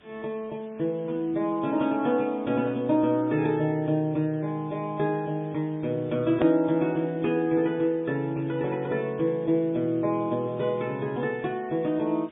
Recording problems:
treble cut off; nothing above 3.6 kHz
lossy codec; MP3, log-spectral distance 4 dB
background hiss; SNR 29 dB
click at an edit; at 6.5 s

